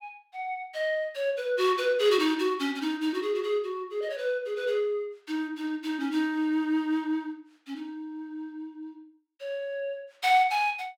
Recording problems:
none

